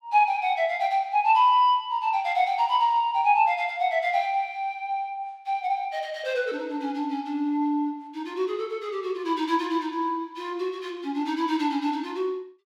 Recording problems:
none

